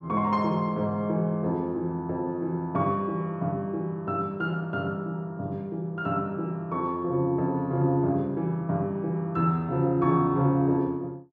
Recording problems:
none

